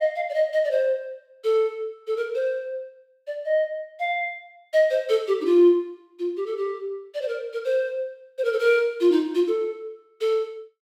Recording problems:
none

